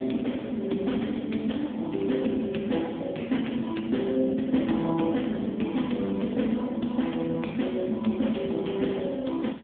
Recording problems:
phone line; 150 Hz to 3.6 kHz, AMR-NB

